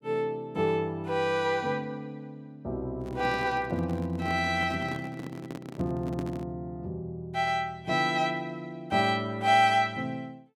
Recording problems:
handling noise; from 3 to 6.5 s; peak -5 dB vs average level

